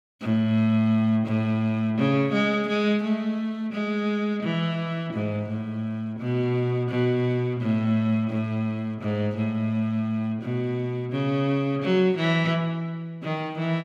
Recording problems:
none

